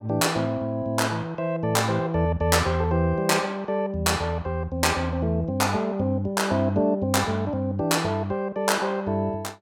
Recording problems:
none

